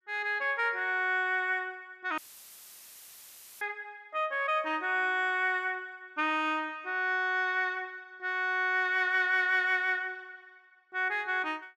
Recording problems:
audio cutting out; at 2 s for 1.5 s; filled with static

